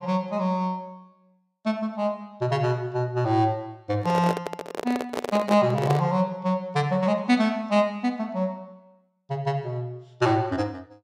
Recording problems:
microphone handling noise; from 4 to 6 s; peak +2 dB vs average level

